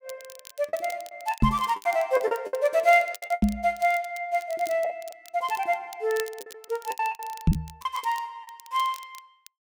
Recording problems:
crackle; vinyl, SNR 19 dB
packet loss; 11% of the sound replaced, filled with the last packet
microphone bump; at 1.5 s, at 3.5 s and at 7.5 s; peak +9 dB vs average level

